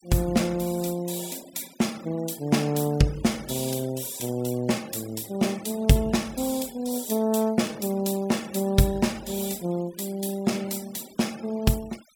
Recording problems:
noise reduction artefacts; signal-to-artefact ratio 20 dB

